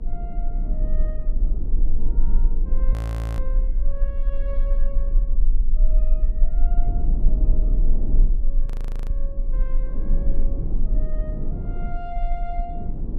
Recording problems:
hum; 50 Hz, harmonics up to 300 Hz, SNR 9 dB
rumble; below 36 Hz, strongest tone 18 Hz, SNR -15 dB
wind on the microphone; below 230 Hz, SNR -5 dB
audio freezing; at 3 s and at 8.5 s

